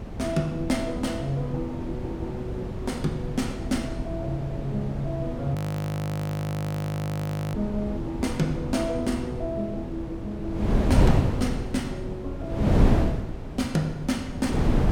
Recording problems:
wind on the microphone; below 270 Hz, SNR 0 dB
frozen audio; at 5.5 s for 2 s

